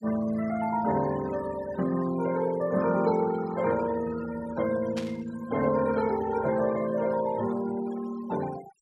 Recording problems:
noise reduction artefacts; signal-to-artefact ratio 15 dB
burst of static; at 5 s; peak -6 dB vs average level

